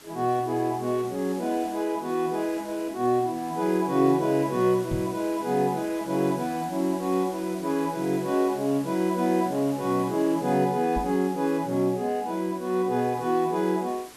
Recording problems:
hiss; SNR 19 dB
microphone thump; at 5 s and at 11 s; peak -2 dB vs average level

